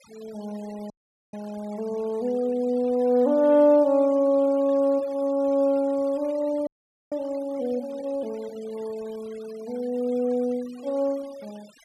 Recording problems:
denoising artefacts; signal-to-artefact ratio 26 dB
frozen audio; at 1 s and at 6.5 s

